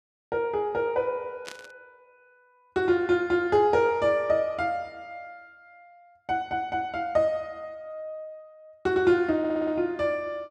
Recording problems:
static burst; at 1.5 s; peak -9 dB vs average level
stutter; at 9.5 s

